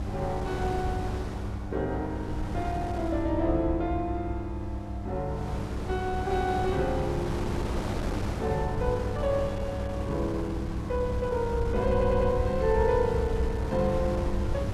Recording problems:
hum; 50 Hz, harmonics up to 1.1 kHz, SNR 8 dB
rumble; below 78 Hz, SNR 6 dB
wind on the microphone; below 650 Hz, SNR 7 dB
audio stuttering; at 12 s

